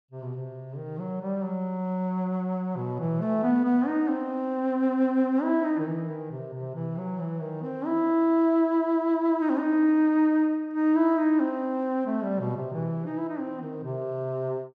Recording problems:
none

